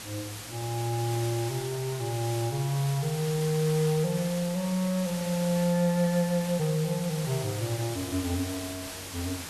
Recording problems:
background hiss; slope -1 dB per octave, SNR 9 dB

